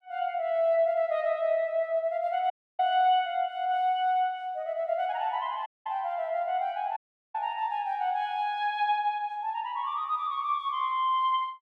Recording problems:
audio cutting out; at 2.5 s, at 5.5 s and at 7 s

